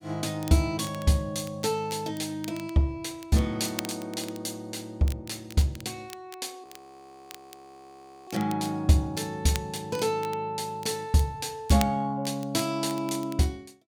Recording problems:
crackling; vinyl, SNR 17 dB
audio freezing; at 6.5 s for 1.5 s

